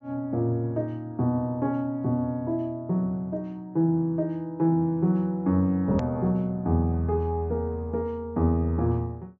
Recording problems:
treble cut off; nothing above 7.3 kHz
click at an edit; at 6 s

